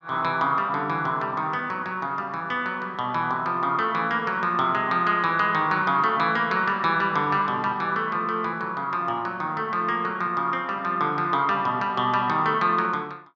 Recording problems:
none

